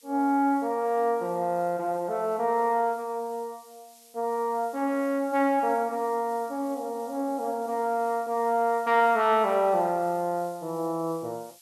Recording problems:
background hiss; slope +4 dB per octave, SNR 25 dB

